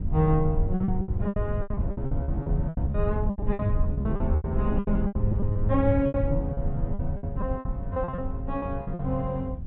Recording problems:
treble cut off; nothing above 4 kHz
low-frequency rumble; below 100 Hz, SNR 1 dB
lost packets; 19% of the sound replaced, filled with repeated pitch periods

